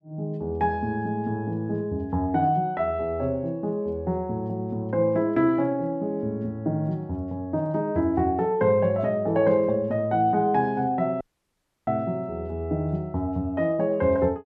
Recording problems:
dropout; at 11 s for 0.5 s

